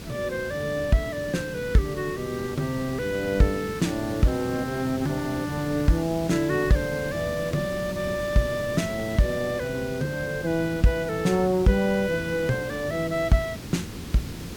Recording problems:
hiss; SNR 10 dB

